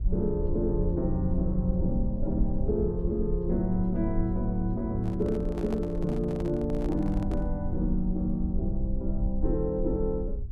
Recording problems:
low-frequency rumble; below 62 Hz, SNR 5 dB
handling noise; from 5 to 7.5 s; peak -7 dB vs average level

